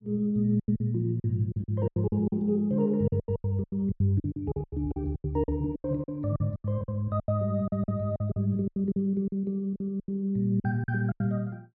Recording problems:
lost packets; 18% of the sound replaced, filled with silence

